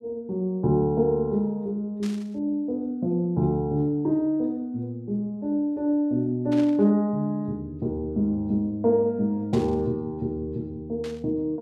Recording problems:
static burst; 4 times, first at 2 s; peak -11 dB vs average level

